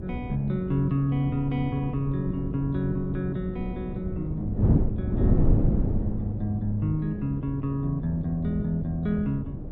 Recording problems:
electrical hum; 60 Hz, harmonics up to 600 Hz, SNR 20 dB
wind on the microphone; below 220 Hz, SNR 2 dB

